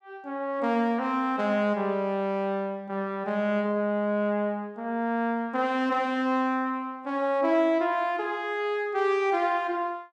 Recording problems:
none

